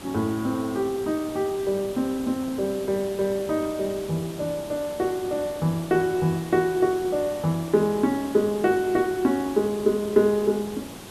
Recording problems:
hiss; slope -5 dB per octave, SNR 15 dB

